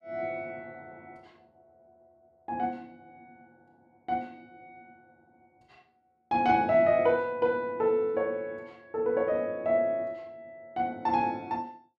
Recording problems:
none

